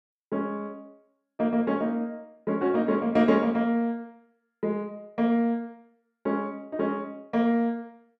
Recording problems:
none

